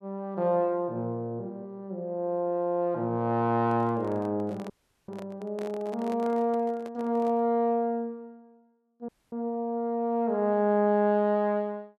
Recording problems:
handling noise; from 3.5 to 7.5 s; peak -10 dB vs average level
audio cutting out; at 4.5 s and at 9 s

